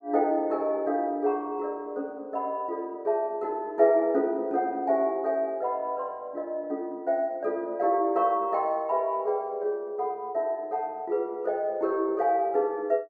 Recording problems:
none

